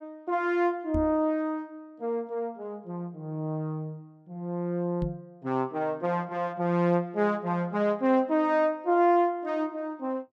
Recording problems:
microphone thump; at 1 s and at 5 s; peak -1 dB vs average level

